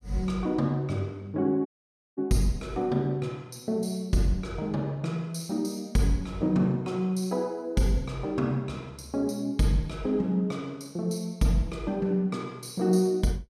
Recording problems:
audio cutting out; at 1.5 s for 0.5 s

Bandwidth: 15 kHz